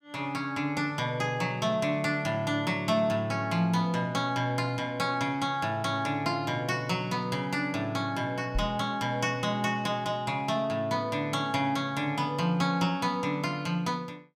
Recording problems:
knock on the microphone; at 8.5 s; peak 0 dB vs average level

